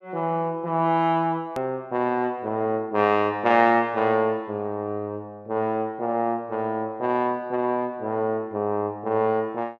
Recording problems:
edit click; at 1.5 s

